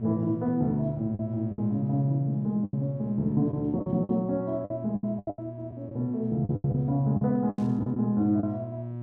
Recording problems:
hum; 60 Hz, harmonics up to 720 Hz, SNR 12 dB
lost packets; 11% of the sound replaced, filled with the last packet
static burst; at 7.5 s; peak -23 dB vs average level

